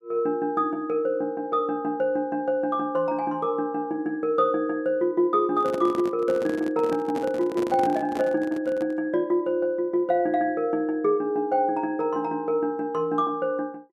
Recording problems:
handling noise; from 5.5 to 9 s; peak -4 dB vs average level

